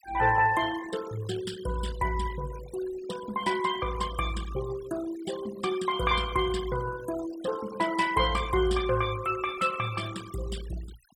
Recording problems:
denoising artefacts; signal-to-artefact ratio 14 dB

